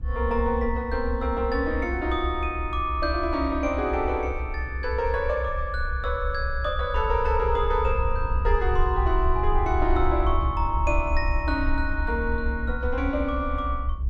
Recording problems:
low-frequency rumble; below 68 Hz, SNR 3 dB

